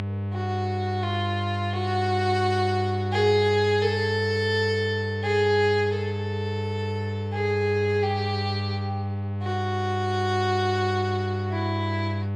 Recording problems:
hum; 50 Hz, harmonics up to 900 Hz, SNR 4 dB

